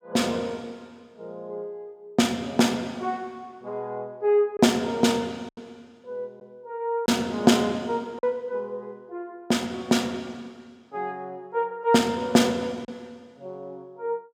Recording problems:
packet loss; 1.5% of the sound replaced, filled with silence

